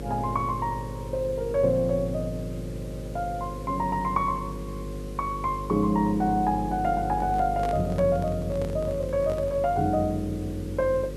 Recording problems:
mains hum; 50 Hz, harmonics up to 550 Hz, SNR 9 dB
background hiss; slope -4 dB per octave, SNR 21 dB
handling noise; from 7 to 9.5 s; peak -5 dB vs average level

